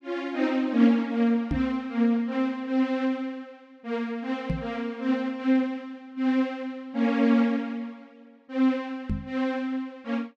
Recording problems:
microphone bump; at 1.5 s, at 4.5 s and at 9 s; peak +2 dB vs average level

